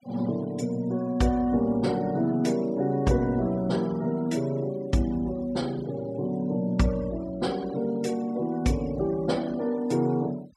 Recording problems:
noise reduction artefacts; signal-to-artefact ratio 23 dB

